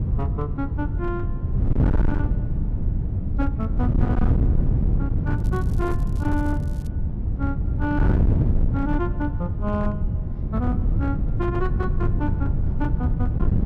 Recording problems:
distortion; hard clipping, signal-to-distortion ratio 12 dB
wind on the microphone; below 130 Hz, SNR -6 dB
crackle; from 5.5 to 7 s; loose cable, SNR 22 dB

